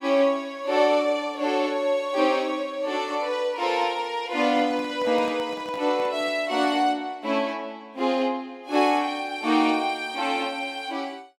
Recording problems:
microphone handling noise; from 4.5 to 6.5 s; peak -11 dB vs average level

